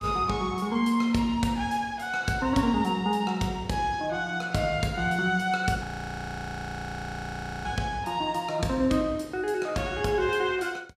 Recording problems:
audio freezing; at 6 s for 2 s

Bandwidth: 15 kHz